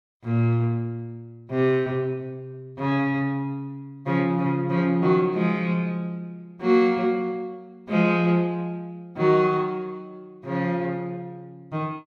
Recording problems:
none

